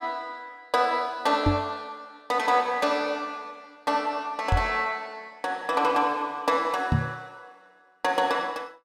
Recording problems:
microphone thump; at 1.5 s, at 4.5 s and at 7 s; peak +6 dB vs average level

